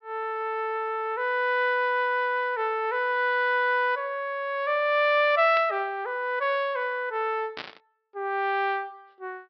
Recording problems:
treble missing; nothing above 5.5 kHz
static burst; at 5.5 s and at 7.5 s; peak -6 dB vs average level

